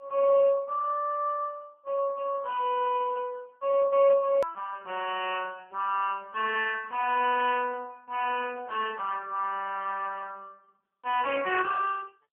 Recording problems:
phone line; 240 Hz to 3.1 kHz, AMR-NB
hard cut with a click; at 4.5 s

